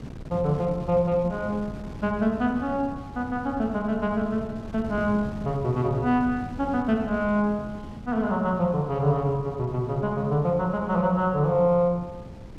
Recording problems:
wind noise; below 260 Hz, SNR 14 dB

